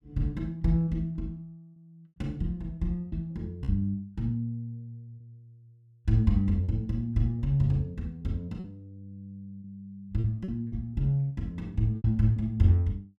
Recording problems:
packet loss; 4% of the sound replaced, filled with repeated pitch periods

